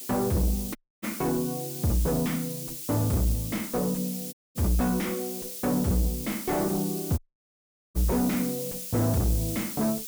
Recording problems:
distortion; soft clipping, signal-to-distortion ratio 7 dB
hiss; slope +8 dB per octave, SNR 7 dB
audio cutting out; at 1 s, at 4.5 s and at 7 s for 1 s

